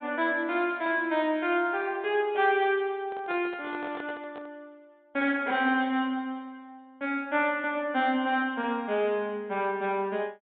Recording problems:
treble missing; nothing above 4 kHz
microphone handling noise; from 3 to 4.5 s; peak -9 dB vs average level

